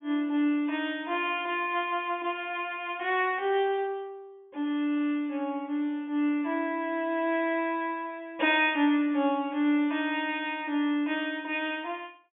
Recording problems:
low-pass filter; nothing above 3.4 kHz

